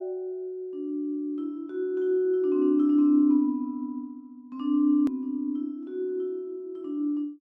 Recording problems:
edit click; at 5 s

